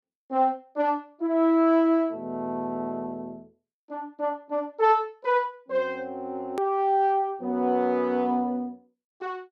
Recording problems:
edit click; at 6.5 s

